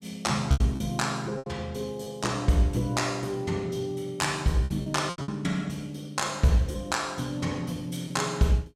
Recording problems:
lost packets; 6% of the sound replaced, filled with repeated pitch periods

